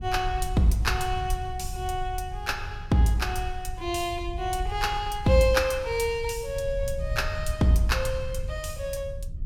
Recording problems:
low-frequency rumble; below 80 Hz, SNR 9 dB

